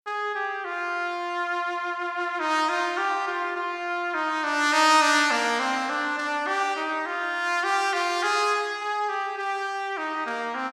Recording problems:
none

